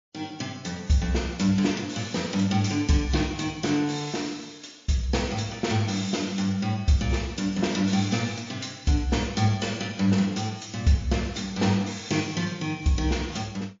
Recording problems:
lossy codec; MP3, log-spectral distance 6 dB

